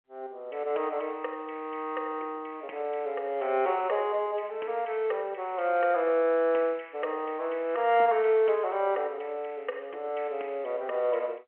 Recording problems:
phone line; 340 Hz to 3.3 kHz, G.711

